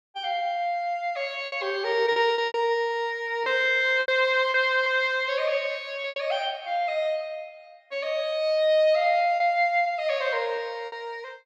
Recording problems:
lost packets; 6% of the sound replaced, filled with repeated pitch periods

